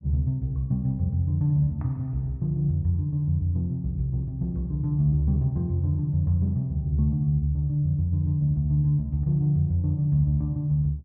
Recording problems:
low-pass filter; nothing above 7.2 kHz

